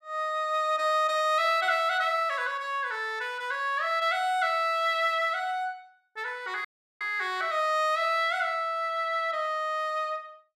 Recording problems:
audio cutting out; at 6.5 s

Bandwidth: 13.5 kHz